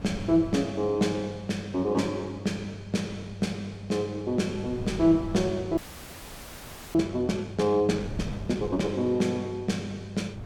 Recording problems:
hum; 50 Hz, harmonics up to 600 Hz, SNR 14 dB
wind on the microphone; below 220 Hz, SNR 17 dB
frozen audio; at 6 s for 1 s

